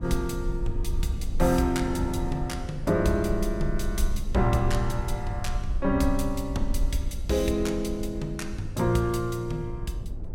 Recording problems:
low-frequency rumble; below 52 Hz, SNR 7 dB
wind on the microphone; below 200 Hz, SNR 12 dB

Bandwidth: 16.5 kHz